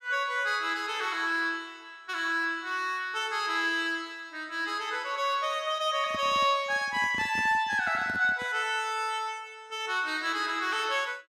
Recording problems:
handling noise; from 6 to 8.5 s; peak -8 dB vs average level

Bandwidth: 14.5 kHz